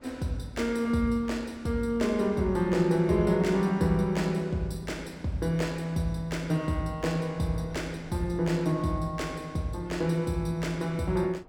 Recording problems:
wind on the microphone; below 570 Hz, SNR 24 dB

